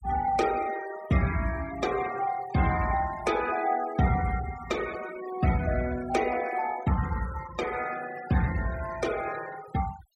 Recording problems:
denoising artefacts; signal-to-artefact ratio 14 dB

